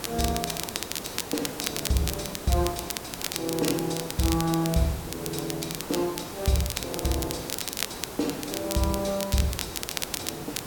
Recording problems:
background hiss; slope -5 dB per octave, SNR 8 dB
crackling; vinyl, SNR 4 dB

